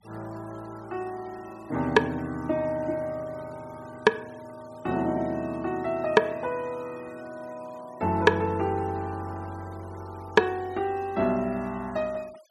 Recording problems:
noise reduction artefacts; signal-to-artefact ratio 25 dB

